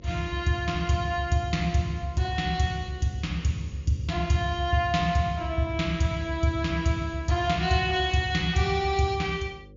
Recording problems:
treble cut off; nothing above 7.1 kHz
electrical hum; 50 Hz, harmonics up to 550 Hz, SNR 23 dB

